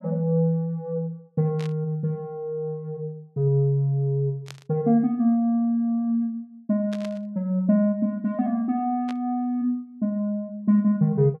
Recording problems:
static burst; 4 times, first at 1.5 s; peak -11 dB vs average level

